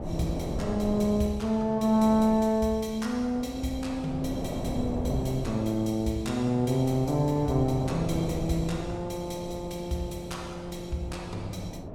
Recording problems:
wind noise; below 530 Hz, SNR 9 dB

